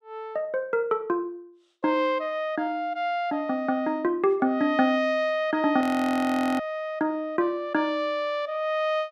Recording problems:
frozen audio; at 6 s for 1 s

